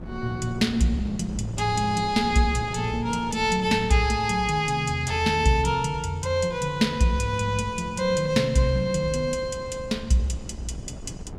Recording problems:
wind on the microphone; below 240 Hz, SNR 15 dB

